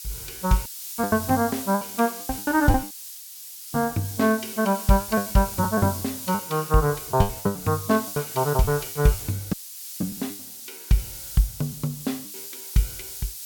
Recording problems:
hiss; slope +6 dB per octave, SNR 9 dB
packet loss; 13% of the sound replaced, filled with the last packet
audio cutting out; at 0.5 s, at 3 s for 1 s and at 9.5 s

